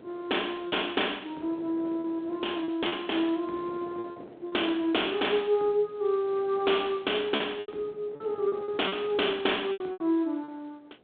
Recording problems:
telephone audio; 260 Hz to 3.7 kHz, G.726
wind on the microphone; below 570 Hz, SNR 21 dB
packet loss; 7% of the sound replaced, filled with repeated pitch periods

